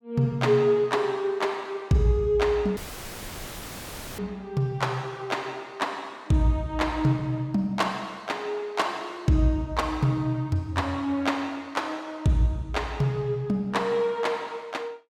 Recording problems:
dropout; at 3 s for 1.5 s; filled with static

